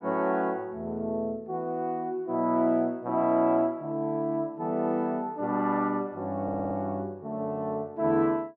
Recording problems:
audio stuttering; at 6.5 s

